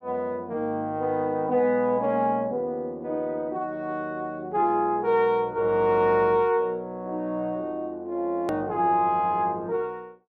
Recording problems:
hard cut with a click; at 8.5 s

